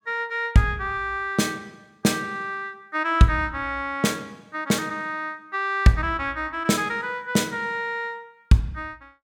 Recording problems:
none

